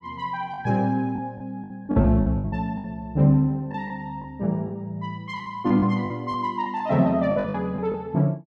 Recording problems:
packet loss; 10% of the sound replaced, filled with the last packet

